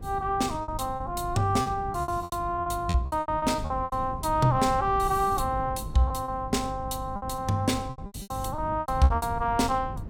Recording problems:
hum; 50 Hz, harmonics up to 500 Hz, SNR 16 dB
rumble; below 170 Hz, SNR 13 dB
packet loss; 14% of the sound replaced, filled with repeated pitch periods

